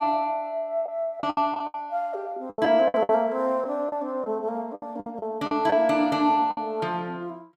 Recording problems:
lost packets; 10% of the sound replaced, filled with the last packet

